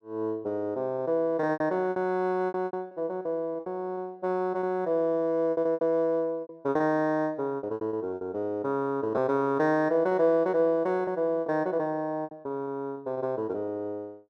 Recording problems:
lost packets; 12% of the sound replaced, filled with repeated pitch periods

